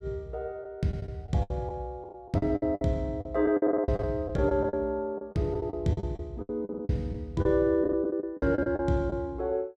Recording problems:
lost packets; 14% of the sound replaced, filled with the last packet

